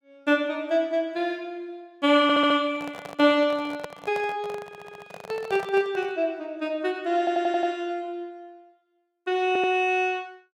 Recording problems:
audio stuttering; 4 times, first at 2 s
microphone handling noise; from 2.5 to 6 s; peak -6 dB vs average level

